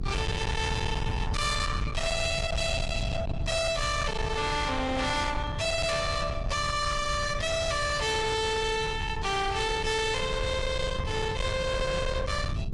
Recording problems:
lossy compression; Vorbis, log-spectral distance 3 dB, nothing above 10.7 kHz
distortion; hard clipping, uneven, signal-to-distortion ratio 7 dB
electrical hum; 60 Hz, harmonics up to 420 Hz, SNR 22 dB
rumble; below 520 Hz, SNR 5 dB
burst of static; at 8.5 s and at 10 s; peak -12 dB vs average level

